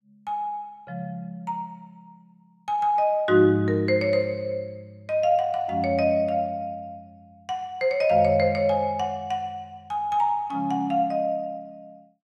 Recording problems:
none

